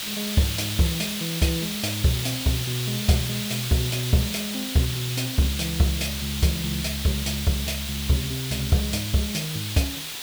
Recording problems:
hiss; SNR 4 dB

